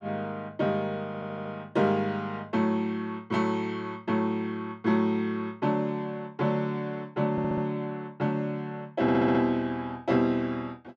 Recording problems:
stutter; at 1 s, at 7.5 s and at 9 s

